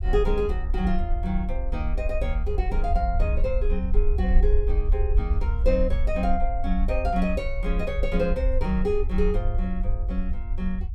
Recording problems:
rumble; below 56 Hz, SNR -1 dB

